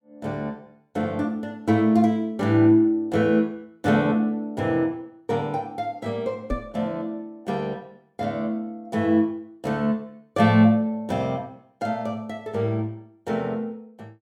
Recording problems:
microphone bump; at 6.5 s; peak -1 dB vs average level

